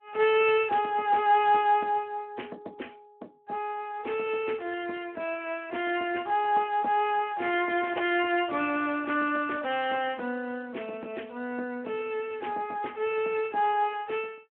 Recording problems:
telephone audio; 220 Hz to 3.1 kHz, Speex

